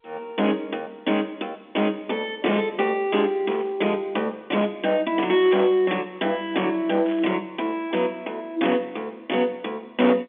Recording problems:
telephone audio; 220 Hz to 3.4 kHz, G.711
distortion; hard clipping, uneven, signal-to-distortion ratio 12 dB
burst of static; 4 times, first at 1 s; peak -11 dB vs average level

